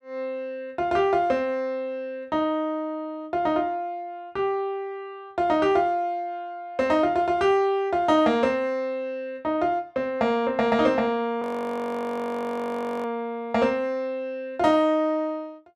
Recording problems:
frozen audio; at 11 s for 1.5 s

